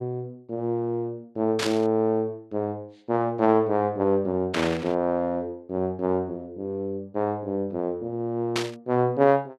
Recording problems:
static burst; at 1.5 s, at 4.5 s and at 8.5 s; peak +2 dB vs average level

